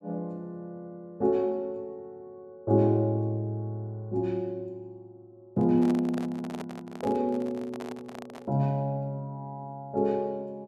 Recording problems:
handling noise; from 5.5 to 8.5 s; peak -6 dB vs average level

